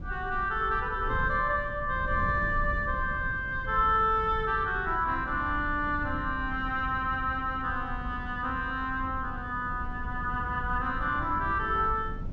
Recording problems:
treble cut off; nothing above 8 kHz
wind noise; below 120 Hz, SNR 10 dB

